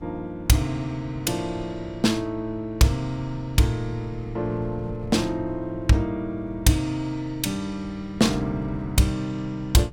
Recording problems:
wind noise; below 140 Hz, SNR 17 dB

